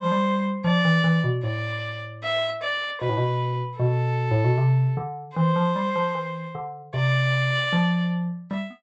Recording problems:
treble missing; nothing above 8 kHz

